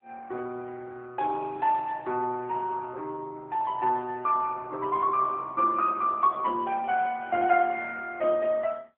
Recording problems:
phone line; 240 Hz to 3.1 kHz, AMR-NB

